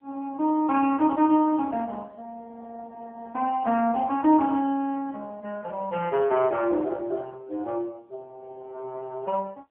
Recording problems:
telephone audio; 280 Hz to 3.1 kHz, AMR-NB

